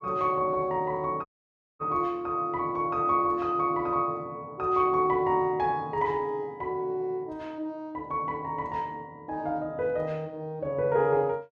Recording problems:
dropout; at 1.5 s for 0.5 s

